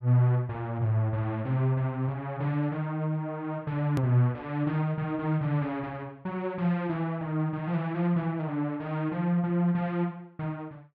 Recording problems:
hard cut with a click; at 4 s

